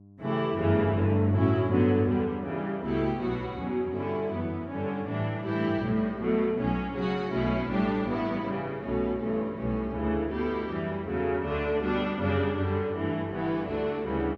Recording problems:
electrical hum; 50 Hz, harmonics up to 700 Hz, SNR 25 dB

